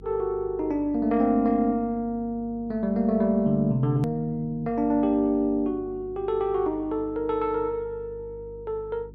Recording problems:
electrical hum; 50 Hz, harmonics up to 450 Hz, SNR 20 dB
hard cut with a click; at 4 s

